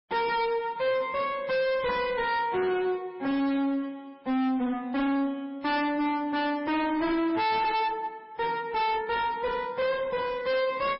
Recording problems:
codec artefacts; MP3, log-spectral distance 2 dB, nothing above 5.3 kHz
distorted audio; hard clipping, uneven, signal-to-distortion ratio 5 dB

